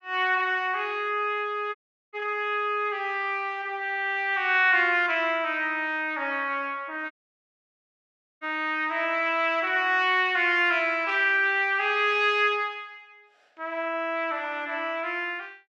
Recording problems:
audio cutting out; at 2 s and at 7 s for 1.5 s

